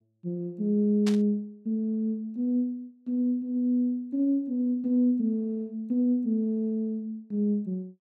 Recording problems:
burst of static; at 1 s; peak -4 dB vs average level

